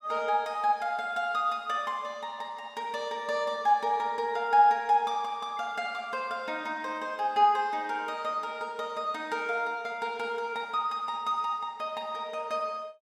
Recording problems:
none

